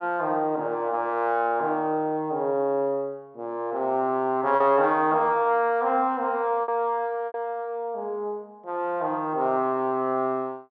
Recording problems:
lost packets; 1.7% of the sound replaced, filled with repeated pitch periods

